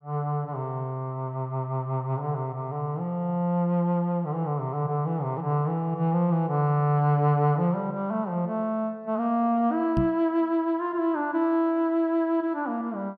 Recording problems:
microphone bump; at 10 s; peak +3 dB vs average level

